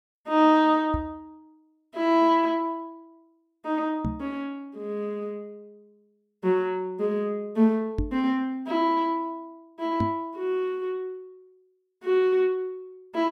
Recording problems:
microphone bump; 4 times, first at 1 s; peak +1 dB vs average level

